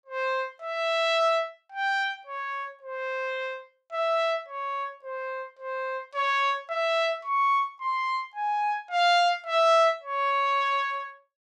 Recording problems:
none

